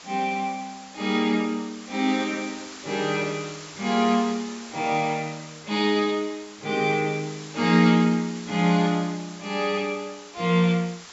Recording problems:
treble missing; nothing above 8 kHz
background hiss; slope 0 dB per octave, SNR 17 dB

